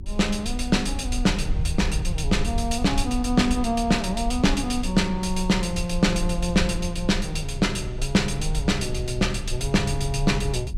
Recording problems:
electrical hum; 50 Hz, harmonics up to 400 Hz, SNR 26 dB
rumble; below 66 Hz, strongest tone 28 Hz, SNR 7 dB

